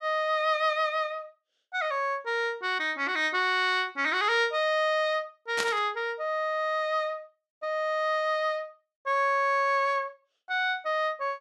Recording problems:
burst of static; at 5.5 s; peak +1 dB vs average level

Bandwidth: 12.5 kHz